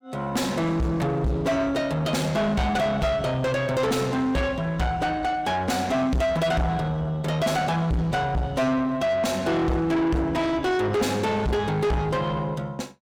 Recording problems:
distortion; soft clipping, signal-to-distortion ratio 6 dB

